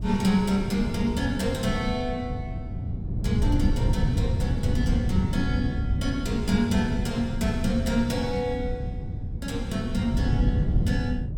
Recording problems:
wind noise; below 140 Hz, SNR 1 dB

